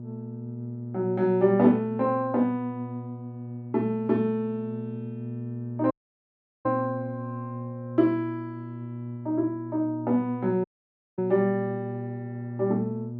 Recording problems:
mains hum; 60 Hz, harmonics up to 600 Hz, SNR 10 dB
audio cutting out; at 6 s for 0.5 s and at 11 s for 0.5 s

